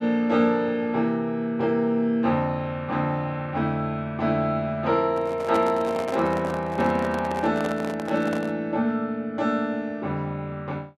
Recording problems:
handling noise; from 5 to 8.5 s; peak -2 dB vs average level

